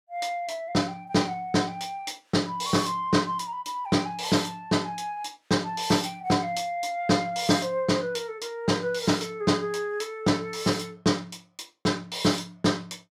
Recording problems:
none

